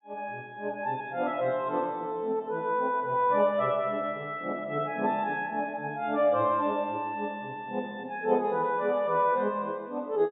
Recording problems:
treble cut off; nothing above 4 kHz

